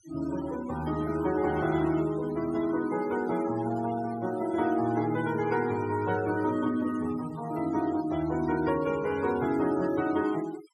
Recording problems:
noise reduction artefacts; signal-to-artefact ratio 16 dB

